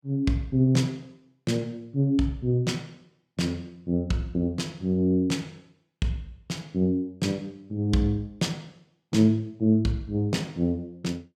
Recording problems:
none

